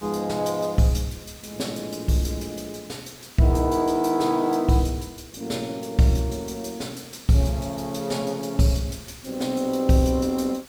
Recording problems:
background hiss; slope 0 dB per octave, SNR 22 dB

